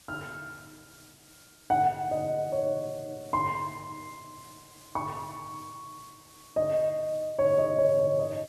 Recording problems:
hiss; slope 0 dB per octave, SNR 24 dB

